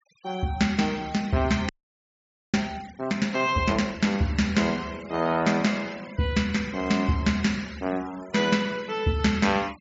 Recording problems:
low-pass filter; nothing above 8 kHz
denoising artefacts; signal-to-artefact ratio 21 dB
audio freezing; at 1.5 s for 1 s

